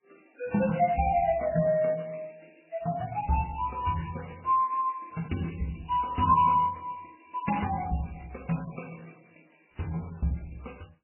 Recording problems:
lossy compression; MP3, then MP3, log-spectral distance 8 dB, nothing above 2.9 kHz

